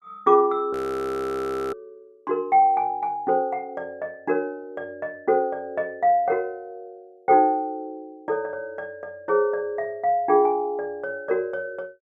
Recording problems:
audio freezing; at 0.5 s for 1 s

